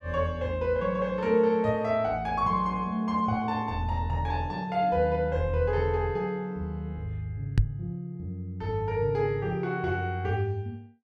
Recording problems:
microphone thump; at 7.5 s; peak +8 dB vs average level

